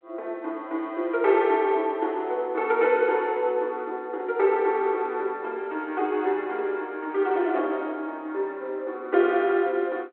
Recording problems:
telephone audio; 280 Hz to 3.6 kHz, G.726

